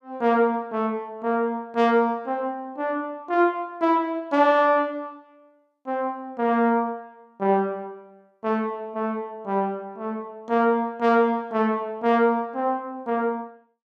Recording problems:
none

